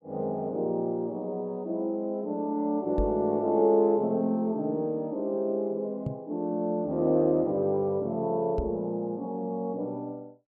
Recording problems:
microphone thump; at 3 s, at 6 s and at 8.5 s; peak +1 dB vs average level

